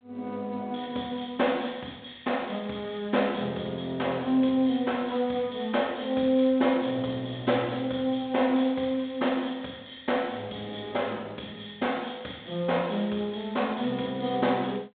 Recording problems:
phone line; 220 Hz to 3.7 kHz, G.726

